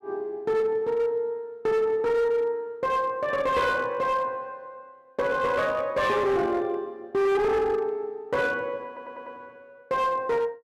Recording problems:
distorted audio; hard clipping, signal-to-distortion ratio 10 dB
audio stuttering; at 9 s

